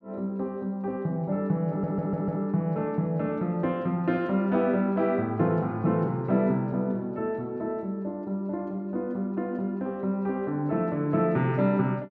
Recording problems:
audio stuttering; at 1.5 s

